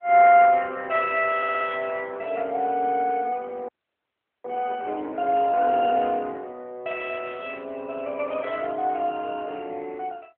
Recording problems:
telephone audio; 280 Hz to 3.3 kHz, AMR-NB
audio stuttering; at 1.5 s
frozen audio; at 3.5 s for 1 s

